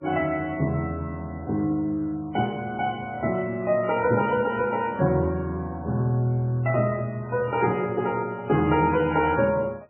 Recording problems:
lossy codec; MP3, then MP3, log-spectral distance 2 dB, nothing above 2.8 kHz

